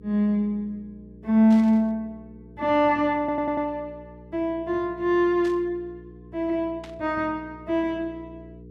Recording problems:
electrical hum; 60 Hz, harmonics up to 480 Hz, SNR 22 dB
static burst; at 1.5 s, at 5.5 s and at 7 s; peak -15 dB vs average level
audio stuttering; at 3 s

